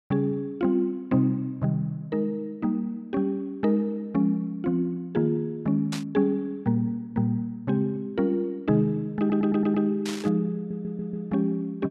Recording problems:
burst of static; at 6 s and at 10 s; peak -4 dB vs average level
audio stuttering; at 9 s and at 11 s

